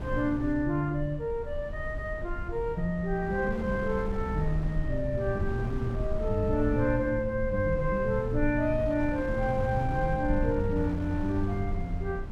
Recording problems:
rumble; below 66 Hz, SNR 8 dB
wind on the microphone; below 390 Hz, SNR 12 dB

